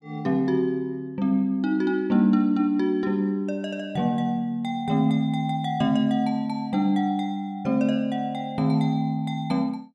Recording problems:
none

